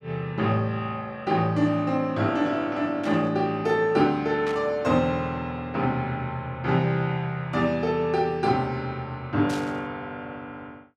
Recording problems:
burst of static; at 3 s, at 4.5 s and at 9.5 s; peak -8 dB vs average level

